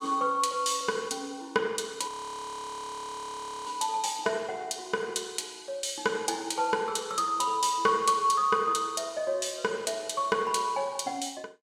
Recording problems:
audio freezing; at 2 s for 1.5 s

